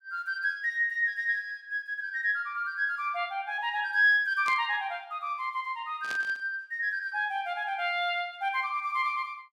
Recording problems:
static burst; at 4.5 s and at 6 s; peak -7 dB vs average level

